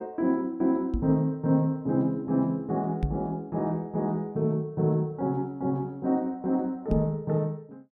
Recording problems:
microphone bump; at 1 s, at 3 s and at 7 s; peak +4 dB vs average level

